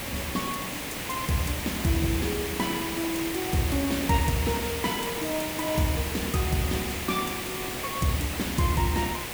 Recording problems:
hiss; SNR 3 dB

